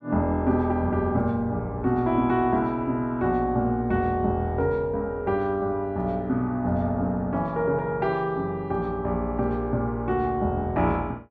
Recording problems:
none

